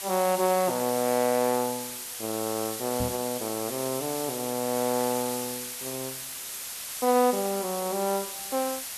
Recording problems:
background hiss; slope +2 dB per octave, SNR 5 dB
knock on the microphone; at 3 s; peak -1 dB vs average level

